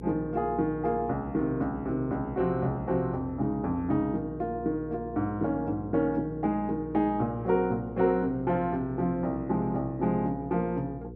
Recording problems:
hum; 60 Hz, harmonics up to 480 Hz, SNR 13 dB

